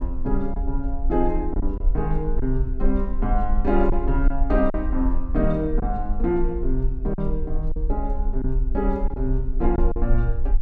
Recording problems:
low-frequency rumble; below 44 Hz, strongest tone 22 Hz, SNR 1 dB
packet loss; 4% of the sound replaced, filled with silence

